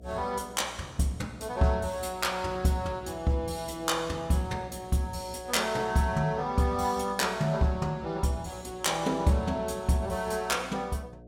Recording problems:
hum; 60 Hz, harmonics up to 720 Hz, SNR 20 dB

